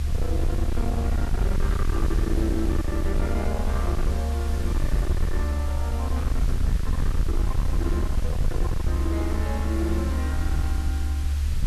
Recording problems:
distortion; hard clipping, signal-to-distortion ratio 7 dB
hiss; slope -1 dB per octave, SNR 11 dB
rumble; below 74 Hz, SNR -5 dB

